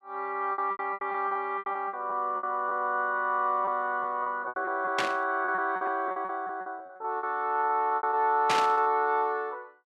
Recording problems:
lost packets; 14% of the sound replaced, filled with repeated pitch periods
static burst; at 5 s and at 8.5 s; peak +4 dB vs average level

